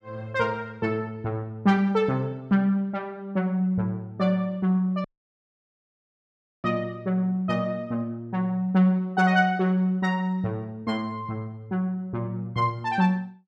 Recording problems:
dropout; at 5 s for 1.5 s

